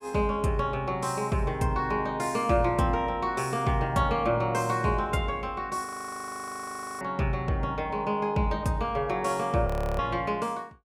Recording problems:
audio freezing; at 6 s for 1 s and at 9.5 s

